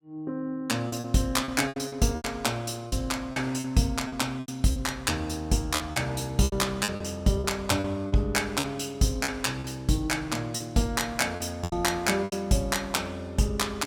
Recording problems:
packet loss; 10% of the sound replaced, filled with repeated pitch periods

